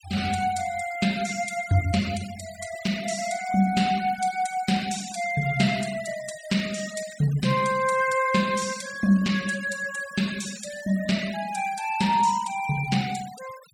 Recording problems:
denoising artefacts; signal-to-artefact ratio 15 dB

